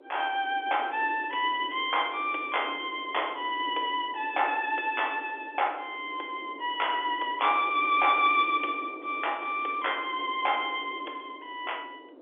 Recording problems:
telephone audio; 260 Hz to 3.5 kHz, G.711
wind on the microphone; below 550 Hz, SNR 17 dB

